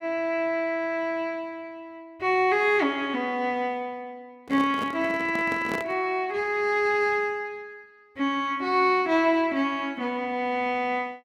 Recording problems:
handling noise; from 4.5 to 6 s; peak -3 dB vs average level

